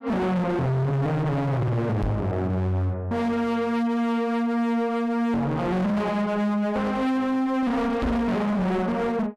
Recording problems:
distortion; hard clipping, signal-to-distortion ratio 6 dB
microphone thump; at 2 s and at 8 s; peak +3 dB vs average level

